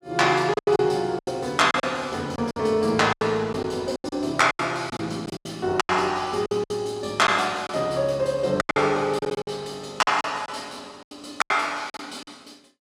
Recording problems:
lost packets; 13% of the sound replaced, filled with silence

